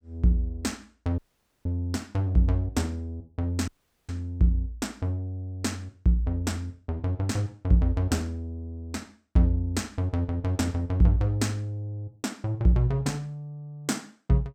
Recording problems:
dropout; at 1 s and at 3.5 s

